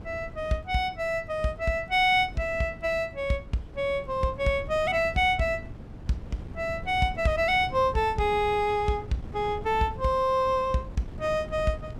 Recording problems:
wind noise; below 210 Hz, SNR 15 dB

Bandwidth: 16.5 kHz